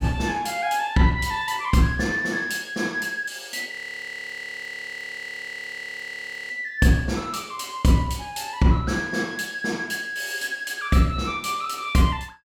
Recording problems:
audio freezing; at 3.5 s for 3 s

